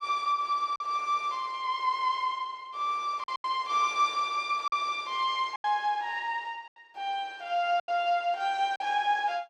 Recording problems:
packet loss; 5% of the sound replaced, filled with silence

